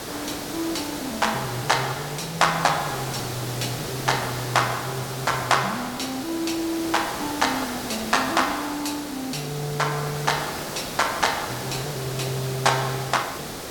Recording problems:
background hiss; slope -4 dB per octave, SNR 6 dB

